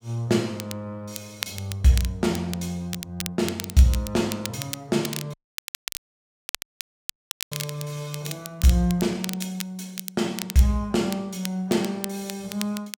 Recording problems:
crackle; vinyl, SNR 10 dB
audio cutting out; at 5.5 s for 2 s

